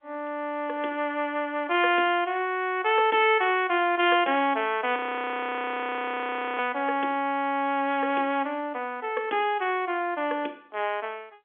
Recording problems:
telephone audio; 240 Hz to 3.4 kHz, G.711
audio freezing; at 5 s for 1.5 s

